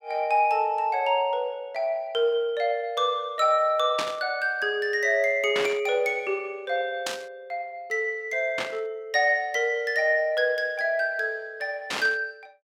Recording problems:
static burst; 5 times, first at 4 s; peak 0 dB vs average level

